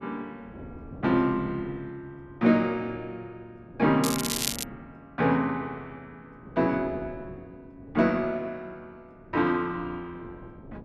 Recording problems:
wind on the microphone; below 380 Hz, SNR 20 dB
crackling; at 4 s; loose cable, SNR 3 dB

